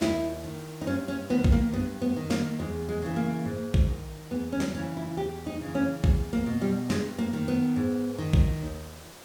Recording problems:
background hiss; slope -3 dB per octave, SNR 19 dB

